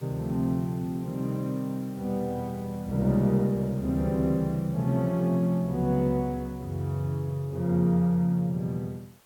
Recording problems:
hiss; slope -3 dB per octave, SNR 27 dB

